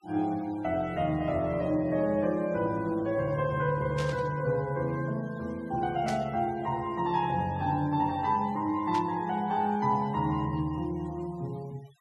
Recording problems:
noise reduction artefacts; signal-to-artefact ratio 24 dB
burst of static; at 4 s, at 6 s and at 9 s; peak -6 dB vs average level

